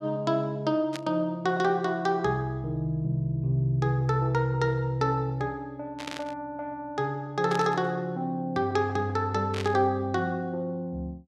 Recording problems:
burst of static; 4 times, first at 1 s; peak -4 dB vs average level

